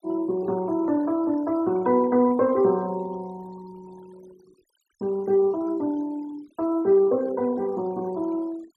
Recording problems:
noise reduction artefacts; signal-to-artefact ratio 26 dB

